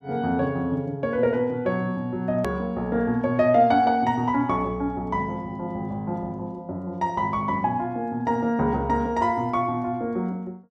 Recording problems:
edit click; at 2.5 s

